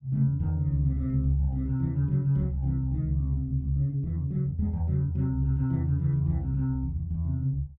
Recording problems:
none

